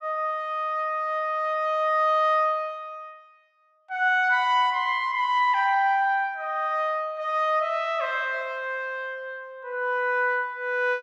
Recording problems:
none

